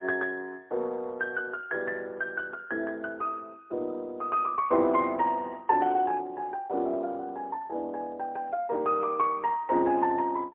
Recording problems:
phone line; 280 Hz to 3.3 kHz, AMR-NB, then MP3

